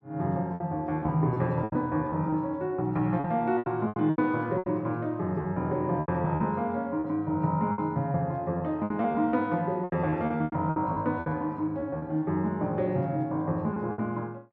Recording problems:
packet loss; 11% of the sound replaced, filled with repeated pitch periods

